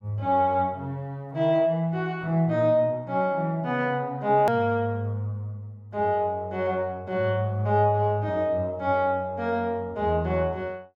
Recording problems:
hard cut with a click; at 4.5 s

